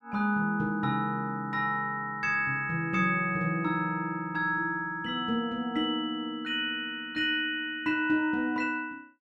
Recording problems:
none

